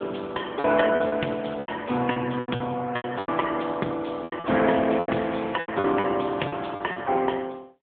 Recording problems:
phone line; 170 Hz to 3.4 kHz, AMR-NB
packet loss; 13% of the sound replaced, filled with repeated pitch periods

